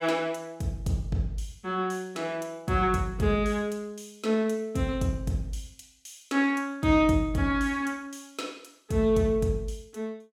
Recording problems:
none

